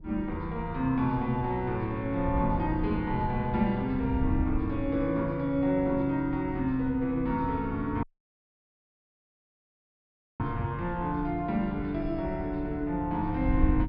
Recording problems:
treble missing; nothing above 5.5 kHz
wind on the microphone; below 92 Hz, SNR 9 dB
dropout; at 8 s for 2.5 s

